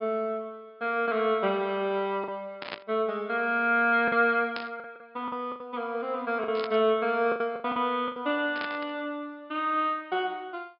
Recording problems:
low-pass filter; nothing above 5.5 kHz
packet loss; 6% of the sound replaced, filled with the last packet
static burst; 4 times, first at 2.5 s; peak -4 dB vs average level

